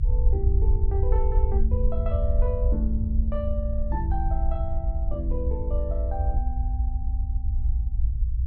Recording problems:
low-frequency rumble; below 68 Hz, SNR -7 dB

